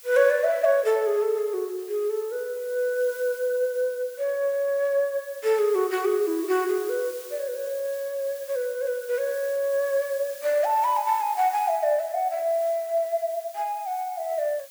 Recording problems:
hiss; slope +3 dB per octave, SNR 18 dB

